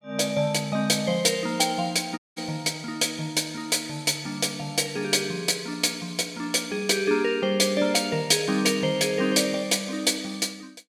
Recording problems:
dropout; at 2 s

